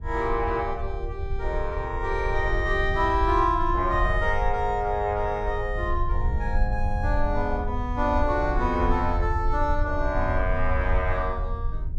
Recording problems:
low-frequency rumble; below 70 Hz, SNR 4 dB

